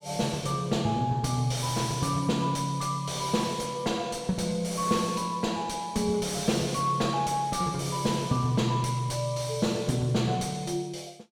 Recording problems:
distortion; soft clipping, signal-to-distortion ratio 9 dB

